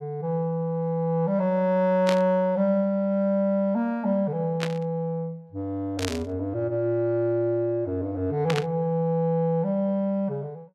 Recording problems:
static burst; 4 times, first at 2 s; peak 0 dB vs average level

